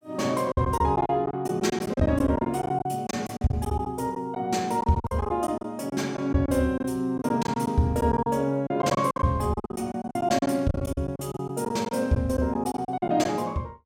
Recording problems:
packet loss; 14% of the sound replaced, filled with silence

